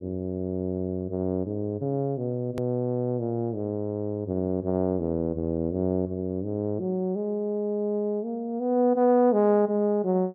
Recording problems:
click at an edit; at 2.5 s

